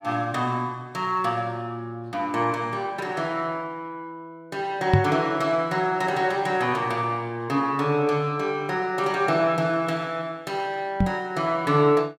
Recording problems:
microphone thump; at 5 s and at 11 s; peak +9 dB vs average level

